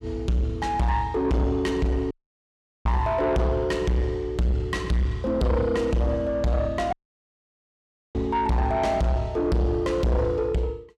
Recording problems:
distorted audio; soft clipping, signal-to-distortion ratio 6 dB
dropout; at 2 s for 0.5 s and at 7 s for 1 s

